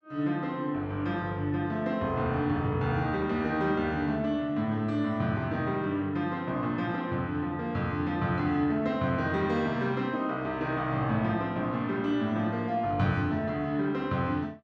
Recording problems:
none

